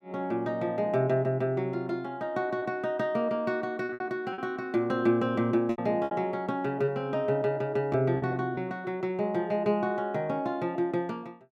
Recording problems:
lost packets; 4% of the sound replaced, filled with repeated pitch periods

